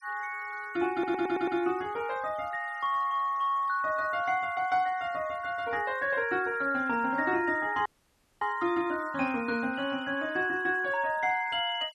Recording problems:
denoising artefacts; signal-to-artefact ratio 25 dB
stutter; at 1 s
dropout; at 8 s for 0.5 s

